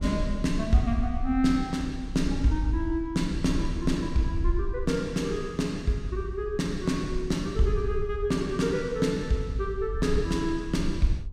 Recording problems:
wind noise; below 62 Hz, SNR 8 dB

